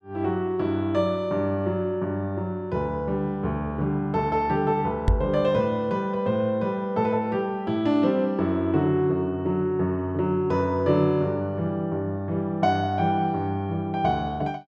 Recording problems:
microphone bump; at 5 s; peak +7 dB vs average level

